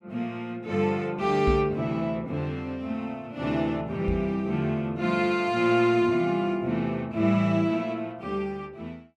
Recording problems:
microphone thump; at 1.5 s and at 4 s; peak +3 dB vs average level

